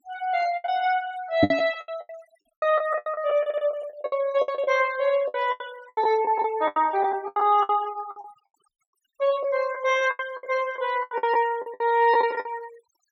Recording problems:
denoising artefacts; signal-to-artefact ratio 21 dB
lost packets; 17% of the sound replaced, filled with the last packet
microphone bump; at 1.5 s; peak +8 dB vs average level
audio stuttering; at 3.5 s

